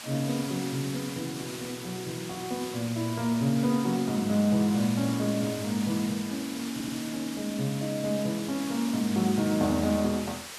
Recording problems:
hiss; slope 0 dB per octave, SNR 10 dB
stutter; at 6.5 s

